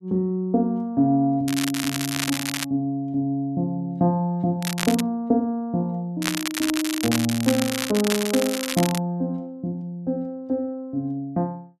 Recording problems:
crackle; from 1.5 to 2.5 s, at 4.5 s and from 6 to 9 s; loose cable, SNR 4 dB

